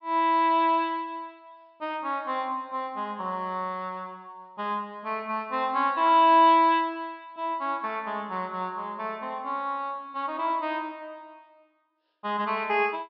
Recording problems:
treble cut off; nothing above 5.3 kHz

